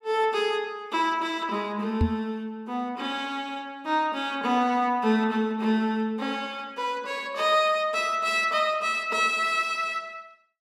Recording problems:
knock on the microphone; at 2 s; peak +6 dB vs average level

